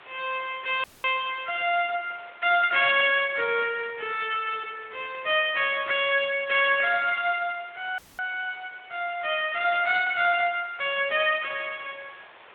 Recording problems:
phone line; 300 Hz to 3.6 kHz, Speex
hiss; SNR 25 dB
audio cutting out; at 1 s and at 8 s

